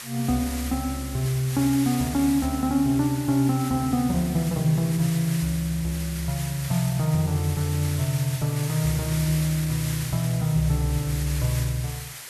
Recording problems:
background hiss; slope +1 dB per octave, SNR 11 dB

